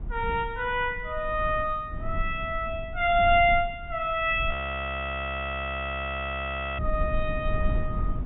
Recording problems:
low-pass filter; nothing above 4 kHz
rumble; below 80 Hz, SNR 9 dB
audio freezing; at 4.5 s for 2.5 s

